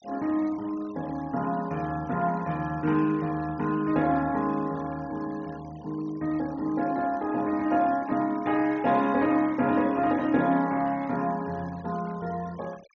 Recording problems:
treble cut off; nothing above 6.6 kHz
denoising artefacts; signal-to-artefact ratio 22 dB

